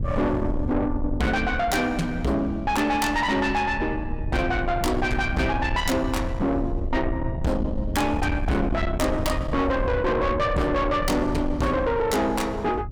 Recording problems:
distorted audio; soft clipping, signal-to-distortion ratio 8 dB
rumble; below 170 Hz, SNR 6 dB

